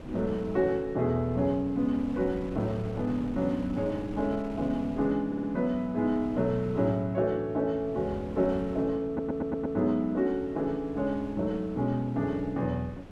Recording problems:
wind on the microphone; below 440 Hz, SNR 14 dB
audio stuttering; at 5.5 s and at 9 s

